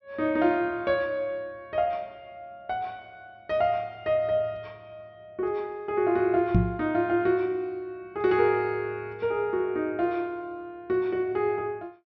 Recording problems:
low-pass filter; nothing above 6.1 kHz
microphone thump; at 6.5 s; peak +9 dB vs average level

